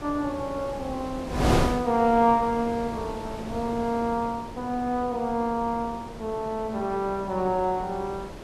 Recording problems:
wind on the microphone; below 720 Hz, SNR 7 dB

